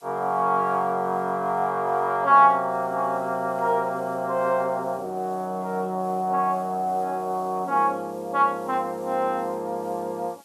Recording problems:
background hiss; SNR 29 dB

